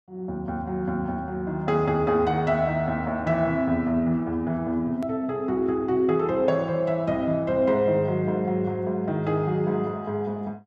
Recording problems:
edit click; at 5 s

